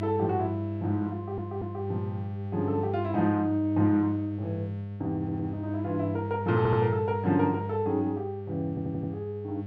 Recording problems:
hum; 50 Hz, harmonics up to 700 Hz, SNR 6 dB
stutter; 4 times, first at 1 s

